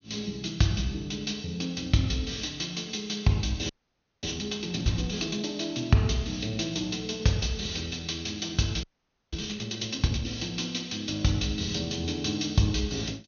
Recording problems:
treble missing; nothing above 6.6 kHz
frozen audio; at 3.5 s for 0.5 s and at 9 s

